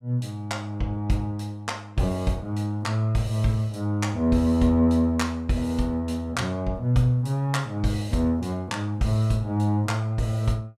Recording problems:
none

